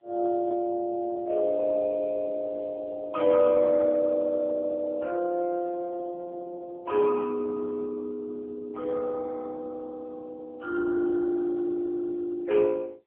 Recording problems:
telephone audio; 370 Hz to 3.1 kHz, AMR-NB

